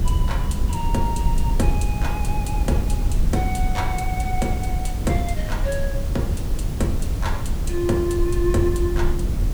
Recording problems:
background hiss; slope -5 dB per octave, SNR 8 dB
rumble; below 82 Hz, SNR -2 dB

